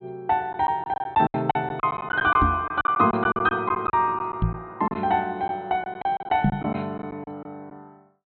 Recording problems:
low-pass filter; nothing above 4.3 kHz
lost packets; 11% of the sound replaced, filled with silence
knock on the microphone; at 2.5 s, at 4.5 s and at 6.5 s; peak +6 dB vs average level

